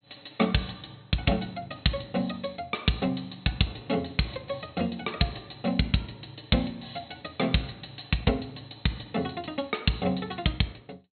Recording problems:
treble cut off; nothing above 4.2 kHz

